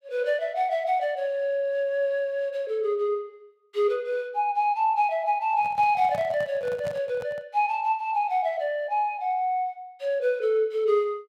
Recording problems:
handling noise; from 5.5 to 7.5 s; peak -9 dB vs average level

